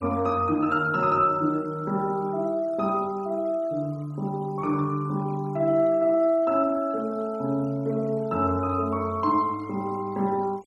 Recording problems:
denoising artefacts; signal-to-artefact ratio 26 dB

